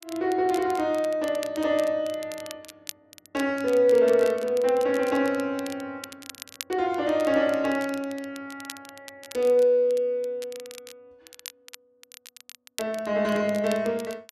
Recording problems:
crackle; vinyl, SNR 19 dB

